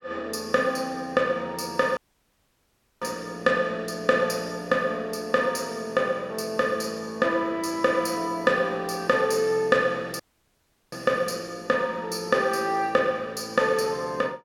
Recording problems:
dropout; at 2 s for 1 s and at 10 s for 0.5 s

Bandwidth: 17 kHz